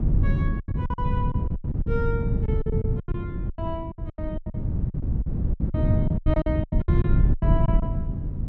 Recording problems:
wind on the microphone; below 140 Hz, SNR -8 dB
packet loss; 19% of the sound replaced, filled with silence

